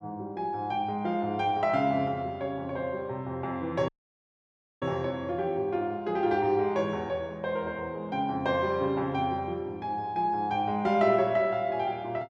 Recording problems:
audio cutting out; at 4 s for 1 s

